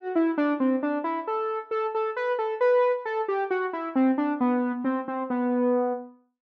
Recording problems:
none

